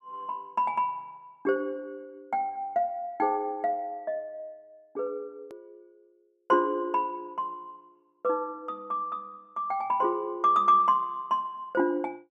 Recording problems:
hard cut with a click; at 5.5 s

